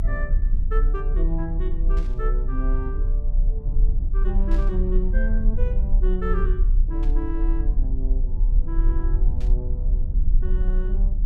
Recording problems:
rumble; below 38 Hz, strongest tone 32 Hz, SNR -9 dB
static burst; 4 times, first at 2 s; peak -9 dB vs average level

